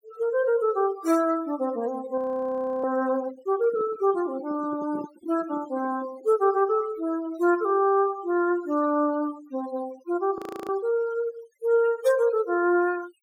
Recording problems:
denoising artefacts; signal-to-artefact ratio 18 dB
audio freezing; at 2 s for 0.5 s and at 10 s
microphone handling noise; from 3.5 to 6.5 s; peak -9 dB vs average level

